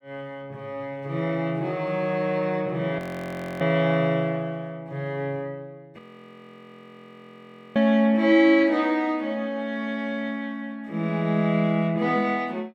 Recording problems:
audio freezing; at 3 s for 0.5 s and at 6 s for 2 s

